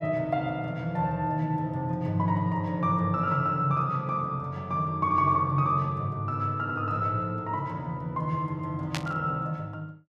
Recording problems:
burst of static; at 9 s; peak -1 dB vs average level

